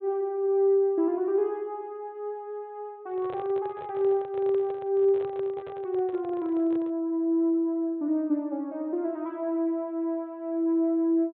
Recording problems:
treble missing; nothing above 4 kHz
microphone handling noise; from 3 to 7 s; peak -10 dB vs average level

